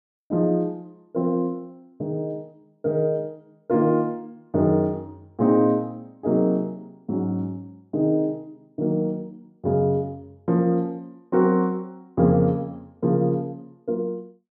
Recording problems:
none

